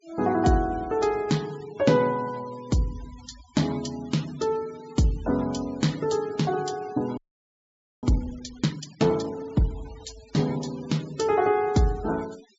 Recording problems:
low-pass filter; nothing above 8 kHz
denoising artefacts; signal-to-artefact ratio 21 dB
audio freezing; at 7 s for 1 s

